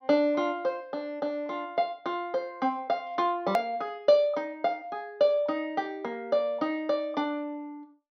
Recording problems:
treble missing; nothing above 6 kHz
click at an edit; at 3.5 s

